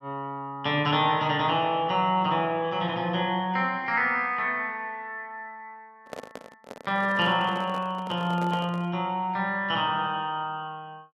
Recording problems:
handling noise; from 6 to 9 s; peak -7 dB vs average level

